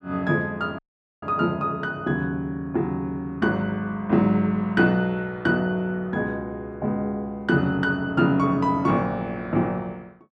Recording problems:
dropout; at 1 s

